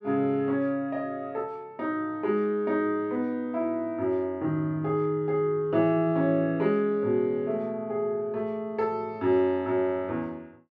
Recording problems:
none

